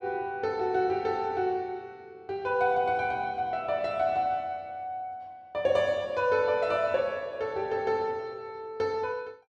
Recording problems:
none

